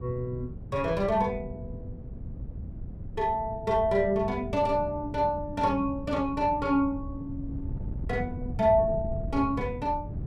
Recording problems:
wind on the microphone; below 150 Hz, SNR 11 dB

